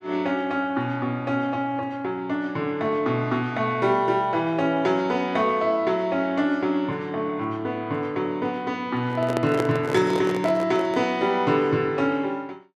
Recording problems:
microphone handling noise; from 9 to 11 s; peak +2 dB vs average level

